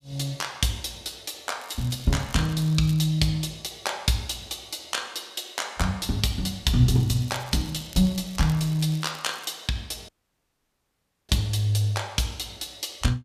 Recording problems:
crackle; from 1.5 to 3 s and from 7 to 9.5 s; loose cable, SNR 20 dB
audio cutting out; at 10 s for 1 s

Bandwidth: 14.5 kHz